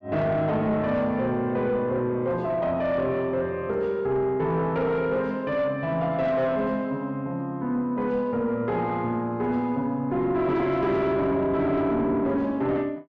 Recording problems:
distortion; soft clipping, signal-to-distortion ratio 10 dB

